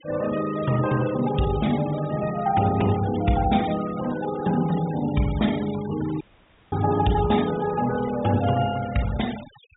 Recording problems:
treble cut off; nothing above 4 kHz
noise reduction artefacts; signal-to-artefact ratio 16 dB
audio cutting out; at 6 s for 0.5 s

